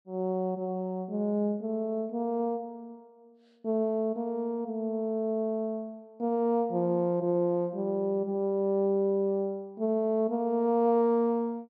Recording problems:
none

